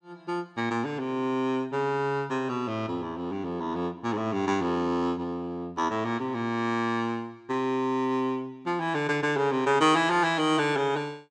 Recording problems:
none

